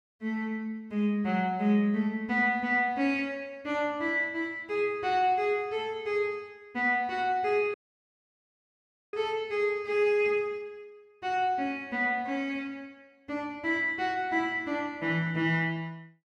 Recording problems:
dropout; at 7.5 s for 1.5 s

